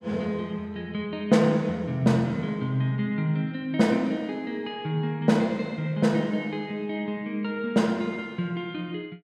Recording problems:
none

